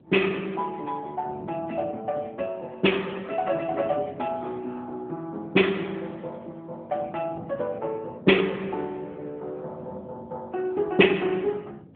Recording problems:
phone line; 150 Hz to 3.4 kHz, AMR-NB
wind on the microphone; below 340 Hz, SNR 19 dB

